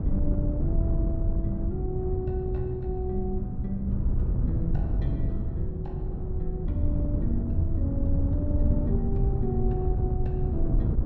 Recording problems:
wind noise; below 110 Hz, SNR -4 dB

